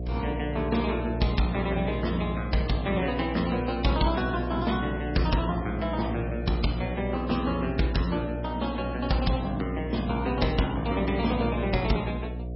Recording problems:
codec artefacts; MP3, log-spectral distance 3 dB, nothing above 5.5 kHz
electrical hum; 60 Hz, harmonics up to 720 Hz, SNR 6 dB

